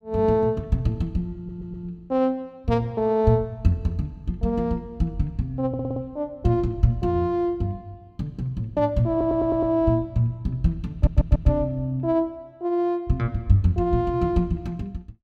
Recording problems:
stutter; 4 times, first at 1.5 s

